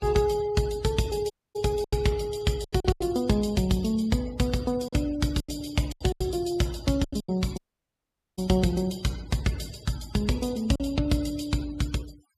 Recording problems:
noise reduction artefacts; signal-to-artefact ratio 20 dB
lost packets; 7% of the sound replaced, filled with silence
audio cutting out; at 1.5 s and at 7.5 s for 1 s

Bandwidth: 15 kHz